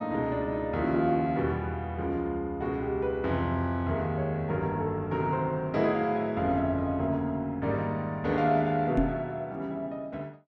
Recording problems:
microphone thump; at 9 s; peak +6 dB vs average level

